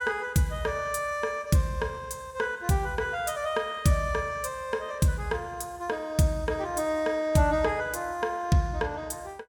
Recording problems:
none

